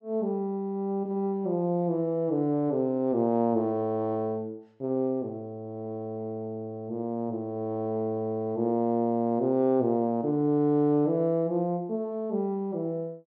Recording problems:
none

